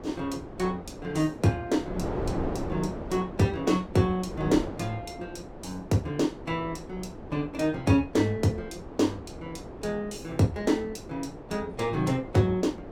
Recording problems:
wind noise; below 540 Hz, SNR 11 dB

